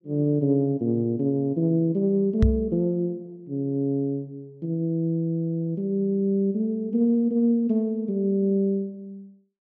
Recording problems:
microphone bump; at 2.5 s; peak +7 dB vs average level

